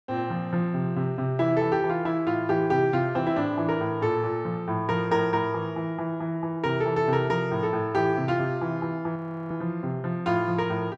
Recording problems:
audio freezing; at 9 s

